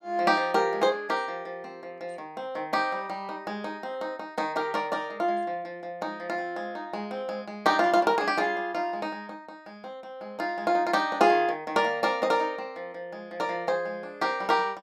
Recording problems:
none

